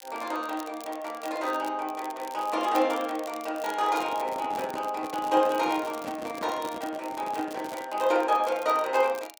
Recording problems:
crackle; vinyl, SNR 19 dB
microphone handling noise; from 4 to 8 s; peak -6 dB vs average level

